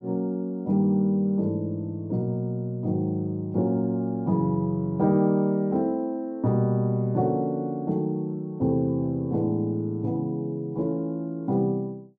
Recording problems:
none

